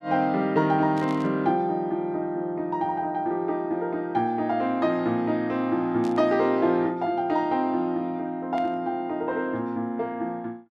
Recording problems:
burst of static; at 1 s, at 6 s and at 8.5 s; peak -14 dB vs average level

